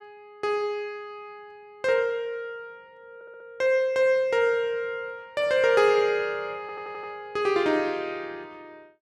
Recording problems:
audio stuttering; at 3 s and at 6.5 s

